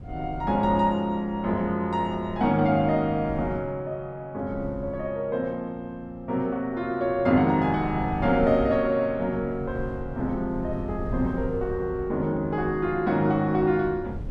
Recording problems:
wind on the microphone; below 140 Hz, SNR 13 dB

